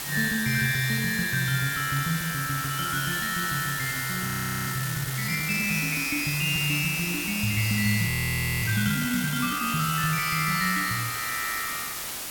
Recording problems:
hiss; slope 0 dB per octave, SNR 5 dB
audio freezing; at 4.5 s and at 8 s for 0.5 s

